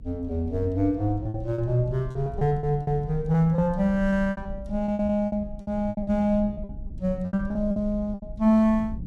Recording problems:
rumble; below 110 Hz, strongest tone 28 Hz, SNR 13 dB
packet loss; 14% of the sound replaced, filled with repeated pitch periods

